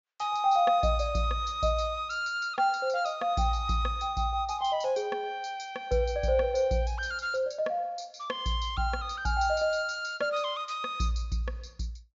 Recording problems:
treble cut off; nothing above 8 kHz

